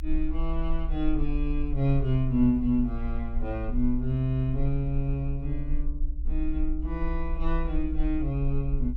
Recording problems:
low-frequency rumble; below 54 Hz, strongest tone 18 Hz, SNR 4 dB

